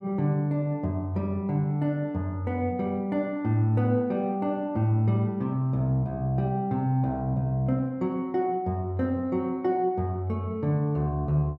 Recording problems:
none

